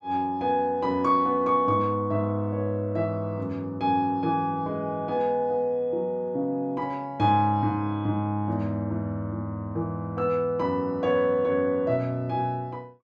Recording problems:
none

